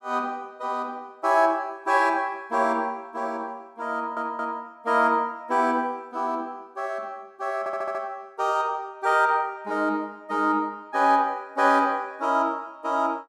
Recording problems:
stutter; at 4 s and at 7.5 s

